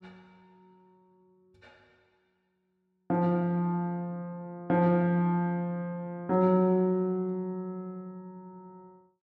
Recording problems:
none

